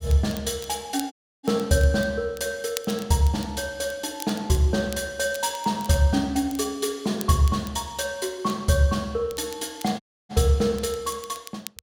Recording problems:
crackle; vinyl, SNR 17 dB
dropout; at 1 s and at 10 s

